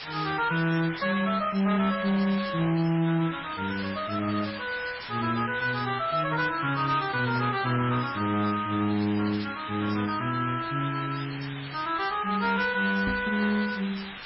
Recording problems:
lossy compression; MP3, then AAC, log-spectral distance 18 dB, nothing above 5.2 kHz
distortion; hard clipping, uneven, signal-to-distortion ratio 11 dB
background hiss; SNR 11 dB
microphone thump; at 13 s; peak -3 dB vs average level

